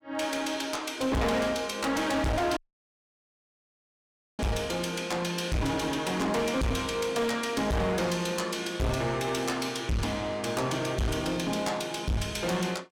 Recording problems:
distorted audio; hard clipping, uneven, signal-to-distortion ratio 6 dB
audio cutting out; at 2.5 s for 2 s

